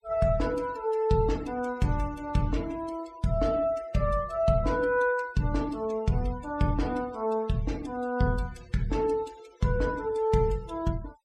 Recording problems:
noise reduction artefacts; signal-to-artefact ratio 21 dB

